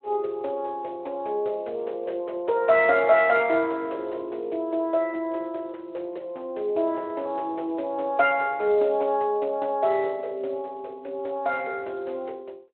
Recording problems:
telephone audio; 340 Hz to 3.3 kHz, Speex

